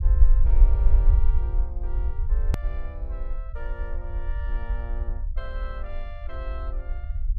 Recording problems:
low-frequency rumble; below 54 Hz, SNR -16 dB
edit click; at 2.5 s

